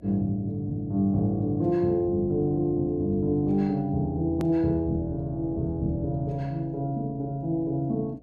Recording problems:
electrical hum; 60 Hz, harmonics up to 720 Hz, SNR 28 dB
edit click; at 4.5 s

